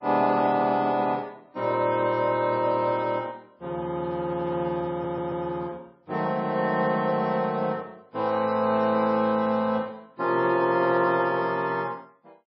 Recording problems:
lossy compression; MP3, log-spectral distance 2 dB, nothing above 4.6 kHz
stutter; at 5 s

